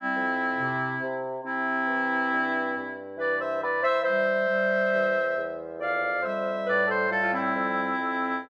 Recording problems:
none

